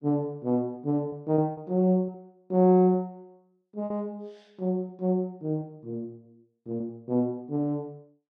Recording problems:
packet loss; 5% of the sound replaced, filled with repeated pitch periods

